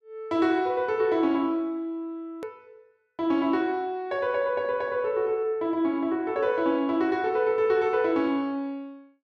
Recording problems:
click at an edit; at 2.5 s

